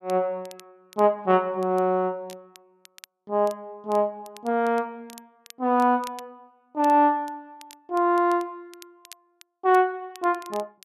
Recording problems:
crackling; vinyl, SNR 26 dB

